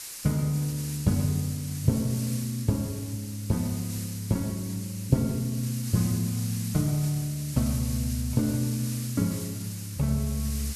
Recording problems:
hiss; slope +2 dB per octave, SNR 10 dB

